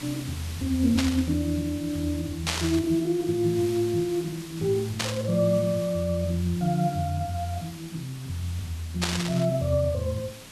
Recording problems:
hiss; SNR 15 dB
static burst; 4 times, first at 1 s; peak +4 dB vs average level

